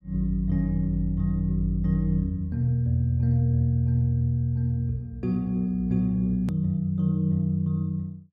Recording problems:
edit click; at 6.5 s

